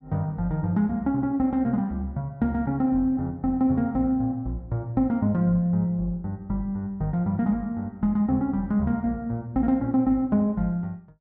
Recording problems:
none

